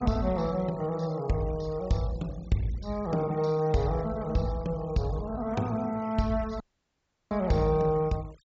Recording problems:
low-pass filter; nothing above 8 kHz
noise reduction artefacts; signal-to-artefact ratio 24 dB
dropout; at 6.5 s for 0.5 s

